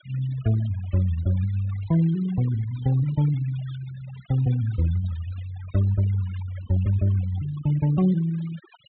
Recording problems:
low-pass filter; nothing above 4 kHz
noise reduction artefacts; signal-to-artefact ratio 20 dB

